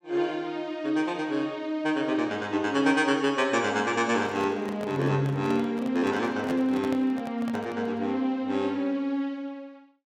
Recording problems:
microphone handling noise; from 4 to 8 s; peak -5 dB vs average level

